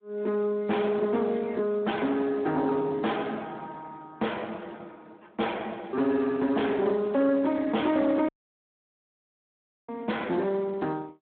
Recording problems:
telephone audio; 220 Hz to 3.6 kHz, Speex
distorted audio; soft clipping, signal-to-distortion ratio 9 dB
audio cutting out; at 8.5 s for 1.5 s

